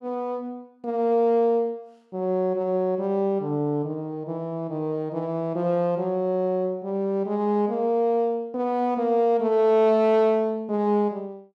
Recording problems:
none

